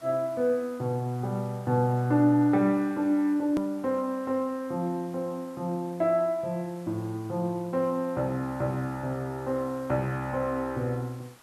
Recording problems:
background hiss; slope -3 dB per octave, SNR 26 dB
edit click; at 3.5 s

